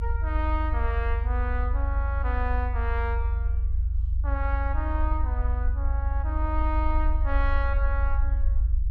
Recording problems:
rumble; below 68 Hz, strongest tone 54 Hz, SNR -6 dB

